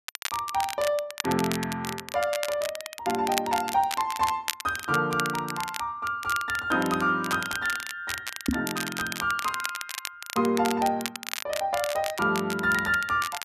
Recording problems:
crackle; vinyl, SNR 8 dB
knock on the microphone; at 8.5 s; peak +6 dB vs average level

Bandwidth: 14 kHz